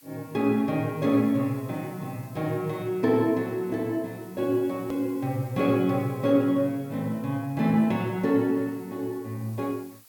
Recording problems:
background hiss; slope +1 dB per octave, SNR 25 dB
hard cut with a click; at 5 s

